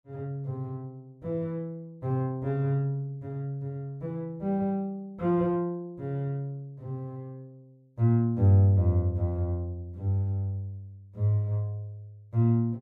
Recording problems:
none

